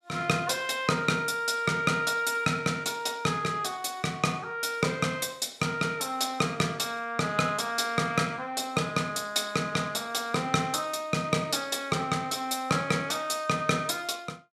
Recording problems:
none

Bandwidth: 14.5 kHz